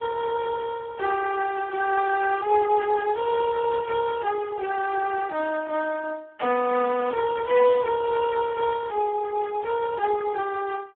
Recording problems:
phone line; 260 Hz to 2 kHz, Speex

